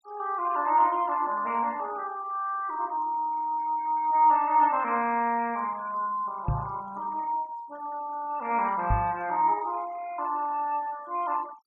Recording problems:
noise reduction artefacts; signal-to-artefact ratio 24 dB
knock on the microphone; at 6.5 s and at 9 s; peak +3 dB vs average level

